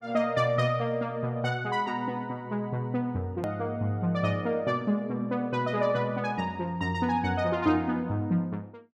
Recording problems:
hard cut with a click; at 3.5 s

